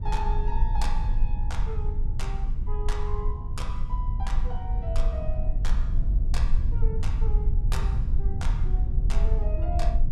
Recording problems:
rumble; below 54 Hz, strongest tone 20 Hz, SNR -11 dB
wind noise; below 300 Hz, SNR 16 dB

